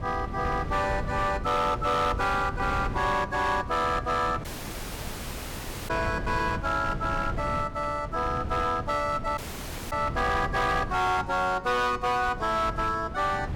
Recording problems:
distortion; hard clipping, signal-to-distortion ratio 12 dB
wind on the microphone; below 260 Hz, SNR 9 dB
dropout; at 4.5 s for 1.5 s and at 9.5 s for 0.5 s

